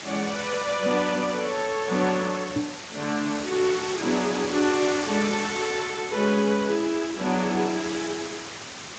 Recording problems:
lossy compression; Speex, log-spectral distance 18 dB
background hiss; slope -1 dB per octave, SNR 9 dB
knock on the microphone; at 2.5 s; peak +3 dB vs average level

